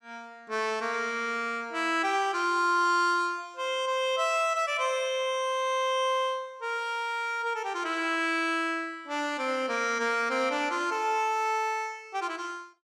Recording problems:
none

